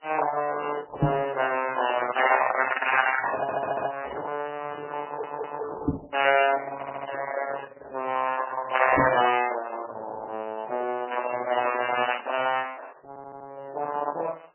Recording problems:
lossy codec; Opus, then MP3, log-spectral distance 5 dB, nothing above 2.9 kHz
knock on the microphone; at 1 s, at 6 s and at 9 s; peak +8 dB vs average level
stutter; 4 times, first at 3.5 s

